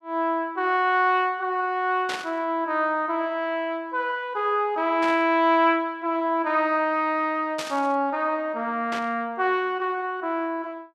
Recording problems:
static burst; 4 times, first at 2 s; peak -3 dB vs average level

